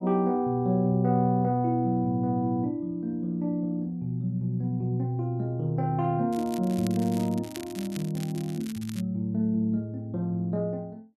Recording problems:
crackle; from 6.5 to 9 s; loose cable, SNR 17 dB

